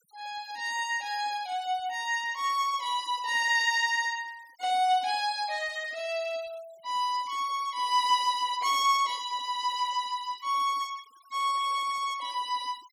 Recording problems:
noise reduction artefacts; signal-to-artefact ratio 23 dB

